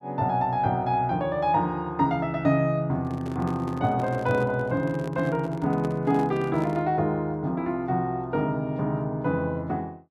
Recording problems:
handling noise; from 3 to 7 s; peak -6 dB vs average level

